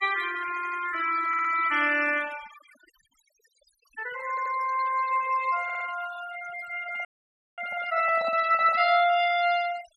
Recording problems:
noise reduction artefacts; signal-to-artefact ratio 14 dB
stutter; 4 times, first at 0.5 s
handling noise; from 7 to 9 s; peak -9 dB vs average level
frozen audio; at 7 s for 0.5 s

